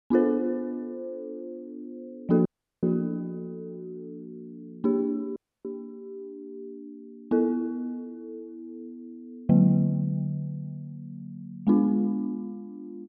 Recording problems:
dropout; at 2.5 s and at 5.5 s

